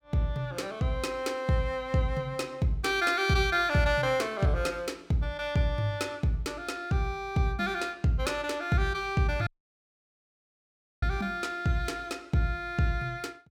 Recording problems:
audio cutting out; at 9.5 s for 1.5 s

